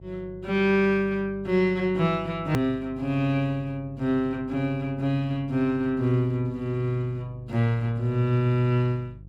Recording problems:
hum; 50 Hz, harmonics up to 500 Hz, SNR 20 dB
hard cut with a click; at 2.5 s

